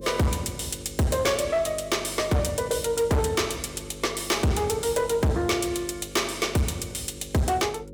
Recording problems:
distorted audio; hard clipping, uneven, signal-to-distortion ratio 8 dB
hum; 50 Hz, harmonics up to 550 Hz, SNR 16 dB

